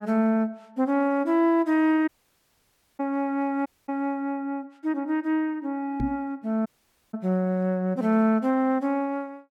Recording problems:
dropout; at 2 s for 1 s, at 3.5 s and at 6.5 s
microphone thump; at 6 s; peak +1 dB vs average level

